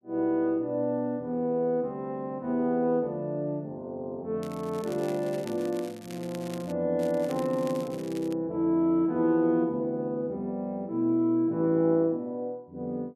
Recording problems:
crackle; from 4.5 to 6.5 s and from 7 to 8.5 s; loose cable, SNR 20 dB

